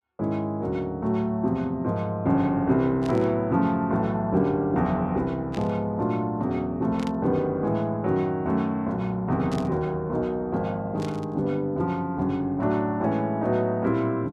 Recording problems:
static burst; 5 times, first at 3 s; peak -10 dB vs average level

